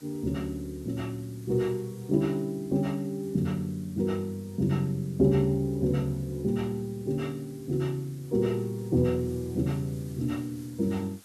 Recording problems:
background hiss; slope -1 dB per octave, SNR 24 dB

